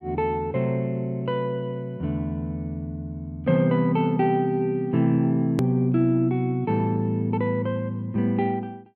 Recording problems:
edit click; at 5.5 s

